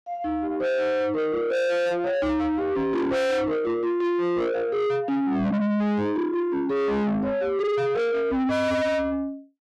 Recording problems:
distorted audio; soft clipping, signal-to-distortion ratio 6 dB

